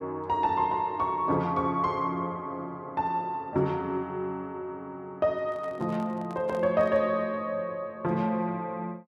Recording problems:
handling noise; from 5.5 to 7 s; peak -10 dB vs average level

